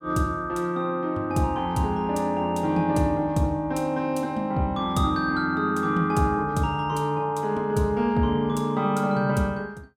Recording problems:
none

